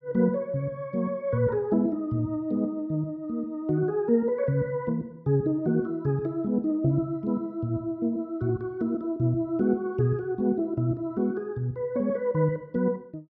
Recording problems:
none

